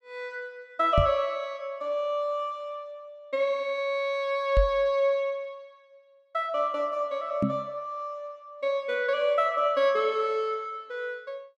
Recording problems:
microphone bump; at 1 s, at 4.5 s and at 7.5 s; peak +6 dB vs average level

